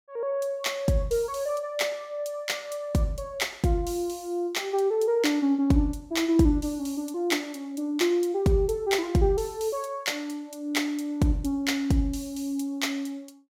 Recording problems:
none

